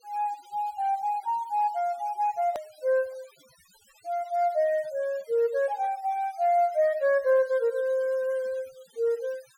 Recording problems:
denoising artefacts; signal-to-artefact ratio 26 dB
edit click; at 2.5 s

